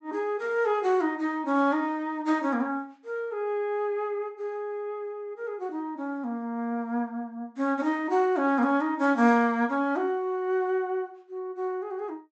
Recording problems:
treble cut off; nothing above 8 kHz

